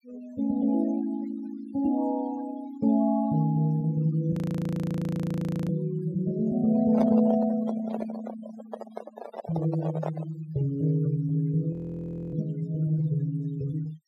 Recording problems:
denoising artefacts; signal-to-artefact ratio 18 dB
frozen audio; at 4.5 s for 1.5 s and at 12 s for 0.5 s
handling noise; from 7 to 10 s; peak +1 dB vs average level

